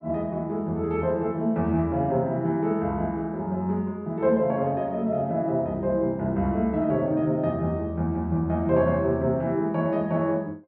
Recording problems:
none

